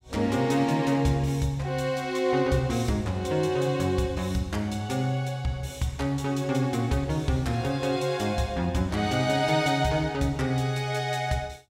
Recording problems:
none

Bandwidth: 16 kHz